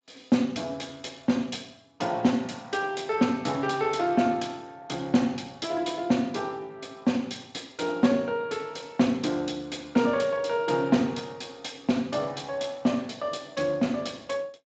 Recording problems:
lossy codec; Speex, log-spectral distance 5 dB, nothing above 7.6 kHz

